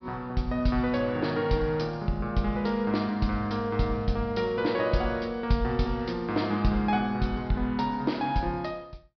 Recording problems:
treble cut off; nothing above 5.5 kHz

